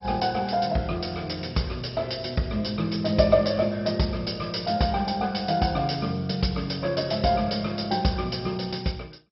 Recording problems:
codec artefacts; MP2, log-spectral distance 6 dB, nothing above 5.5 kHz

